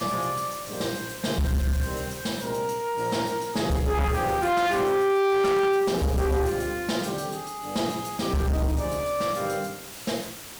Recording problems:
distortion; soft clipping, signal-to-distortion ratio 7 dB
background hiss; slope -1 dB per octave, SNR 14 dB

